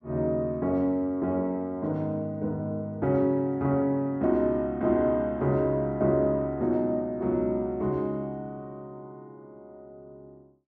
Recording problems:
none

